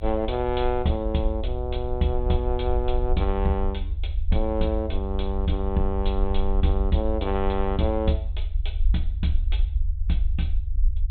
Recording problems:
treble cut off; nothing above 4 kHz
rumble; below 60 Hz, SNR 1 dB

